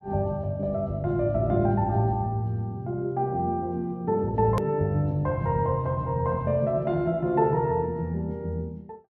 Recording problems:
hard cut with a click; at 4.5 s

